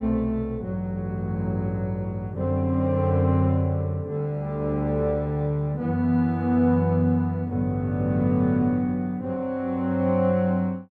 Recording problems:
none

